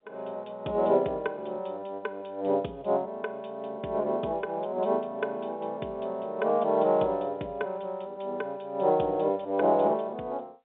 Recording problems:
phone line; 240 Hz to 3.6 kHz, G.711

